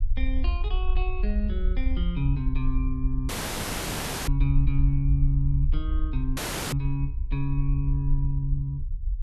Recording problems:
rumble; below 56 Hz, SNR -1 dB
audio cutting out; at 3.5 s for 1 s and at 6.5 s

